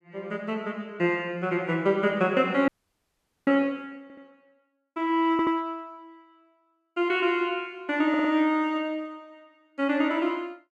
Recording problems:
frozen audio; at 2.5 s for 1 s
stutter; at 4 s, at 5.5 s and at 8 s

